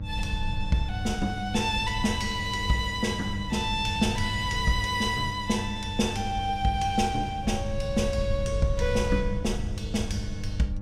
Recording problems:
hum; 50 Hz, harmonics up to 800 Hz, SNR 10 dB
low-frequency rumble; below 98 Hz, SNR 7 dB

